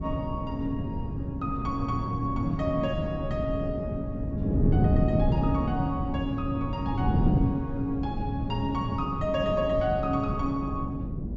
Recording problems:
low-pass filter; nothing above 8 kHz
wind on the microphone; below 210 Hz, SNR 0 dB

